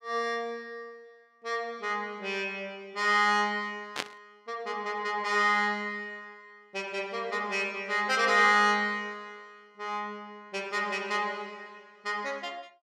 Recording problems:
burst of static; at 4 s; peak +2 dB vs average level

